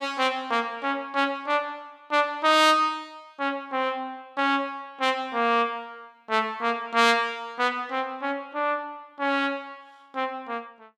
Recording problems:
none

